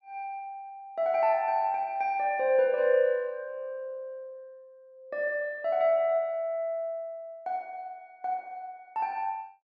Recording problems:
none

